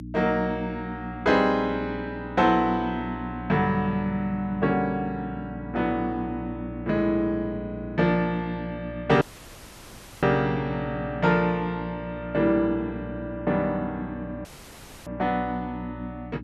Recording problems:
mains hum; 60 Hz, harmonics up to 300 Hz, SNR 11 dB
audio cutting out; at 9 s for 1 s and at 14 s for 0.5 s

